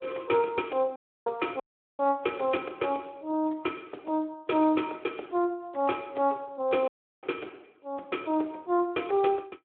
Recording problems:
telephone audio; 280 Hz to 3.4 kHz, Speex
dropout; at 1 s, at 1.5 s and at 7 s

